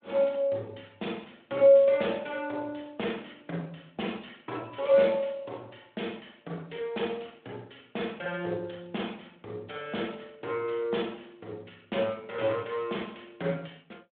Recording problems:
phone line; 240 Hz to 3.7 kHz, Speex

